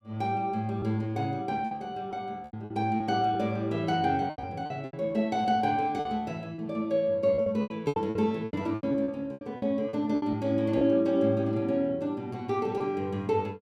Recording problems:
lost packets; 10% of the sound replaced, filled with repeated pitch periods

